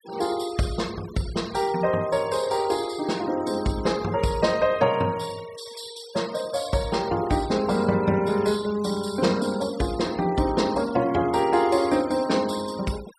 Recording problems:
denoising artefacts; signal-to-artefact ratio 19 dB

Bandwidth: 14.5 kHz